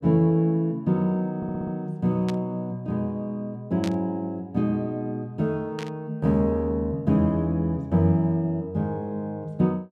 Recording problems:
audio stuttering; at 1.5 s
static burst; at 2.5 s, at 4 s and at 6 s; peak -8 dB vs average level

